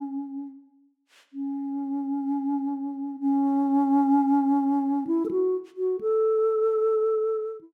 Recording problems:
none

